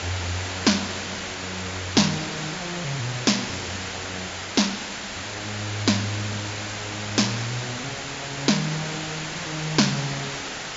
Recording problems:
low-pass filter; nothing above 7.4 kHz
hiss; slope -1 dB per octave, SNR 4 dB

